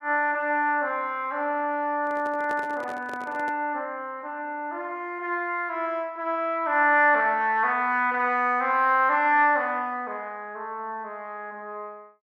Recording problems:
handling noise; from 2 to 3.5 s; peak -9 dB vs average level

